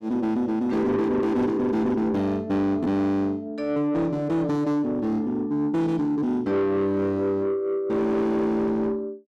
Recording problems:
distorted audio; soft clipping, signal-to-distortion ratio 11 dB

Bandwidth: 13.5 kHz